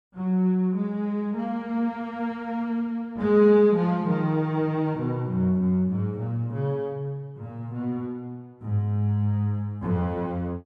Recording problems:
none

